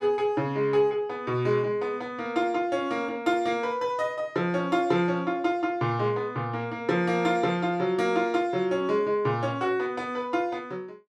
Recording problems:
none

